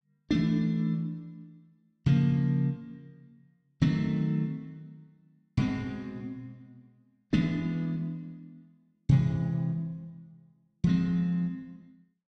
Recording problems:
none

